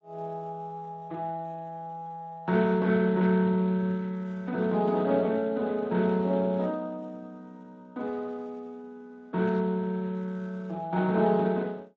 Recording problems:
lossy codec; Speex, log-spectral distance 2 dB

